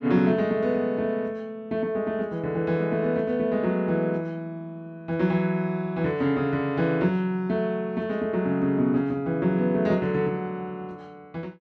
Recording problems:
none

